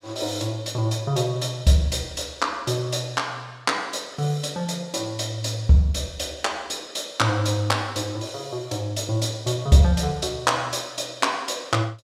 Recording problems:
none

